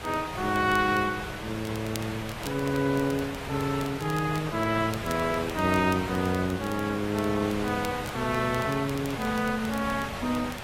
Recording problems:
codec artefacts; AAC, log-spectral distance 4 dB
hiss; SNR 7 dB
crackle; vinyl, SNR 19 dB

